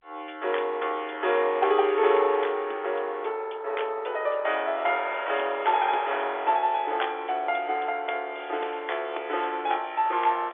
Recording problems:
phone line; 320 Hz to 3.5 kHz, G.711

